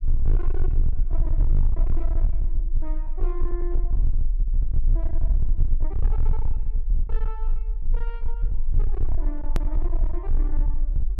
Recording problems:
distortion; hard clipping, signal-to-distortion ratio 8 dB
low-frequency rumble; below 36 Hz, strongest tone 20 Hz, SNR -14 dB
hard cut with a click; at 9.5 s

